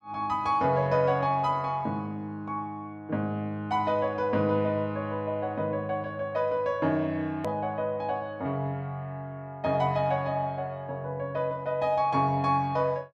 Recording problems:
edit click; at 7.5 s

